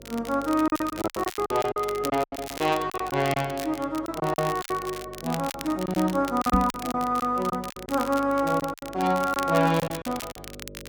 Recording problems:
hum; 50 Hz, harmonics up to 600 Hz, SNR 19 dB
crackling; vinyl, SNR 14 dB
lost packets; 13% of the sound replaced, filled with silence
knock on the microphone; at 6.5 s; peak +7 dB vs average level

